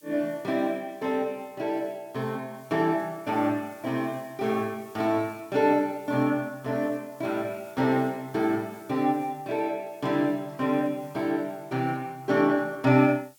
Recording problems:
hiss; SNR 27 dB

